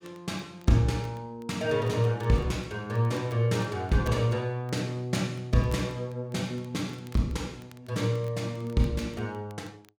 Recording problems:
crackling; vinyl, SNR 28 dB

